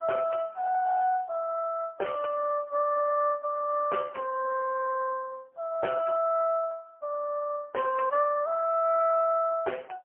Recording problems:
telephone audio; 320 Hz to 2.1 kHz, AMR-NB, then MP3

